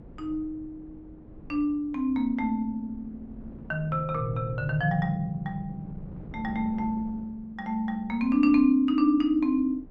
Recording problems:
wind noise; below 270 Hz, SNR 19 dB

